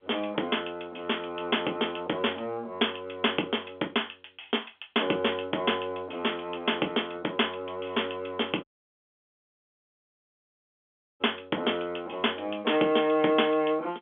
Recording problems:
telephone audio; 260 Hz to 3.4 kHz, G.711
dropout; at 8.5 s for 2.5 s

